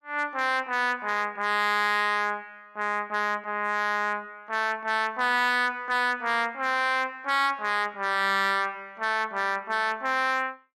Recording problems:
distortion; hard clipping, uneven, signal-to-distortion ratio 12 dB

